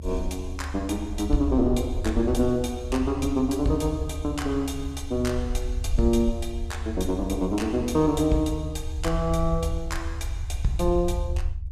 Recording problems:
rumble; below 74 Hz, SNR 6 dB

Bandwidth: 14.5 kHz